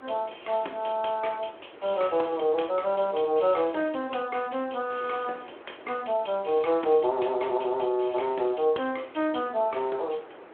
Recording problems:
phone line; 280 Hz to 3.4 kHz, Speex
wind noise; below 1.1 kHz, SNR 20 dB

